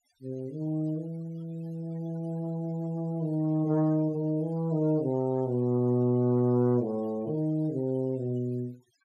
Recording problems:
noise reduction artefacts; signal-to-artefact ratio 27 dB

